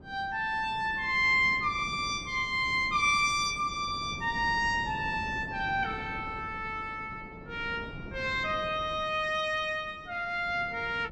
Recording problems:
wind noise; below 350 Hz, SNR 16 dB

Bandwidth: 14 kHz